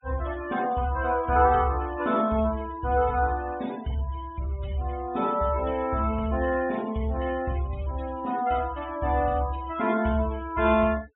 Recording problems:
treble cut off; nothing above 4 kHz
denoising artefacts; signal-to-artefact ratio 20 dB

